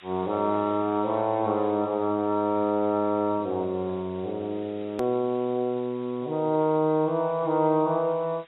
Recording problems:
lossy codec; AAC, log-spectral distance 11 dB, nothing above 13.1 kHz
background hiss; SNR 27 dB
edit click; at 5 s

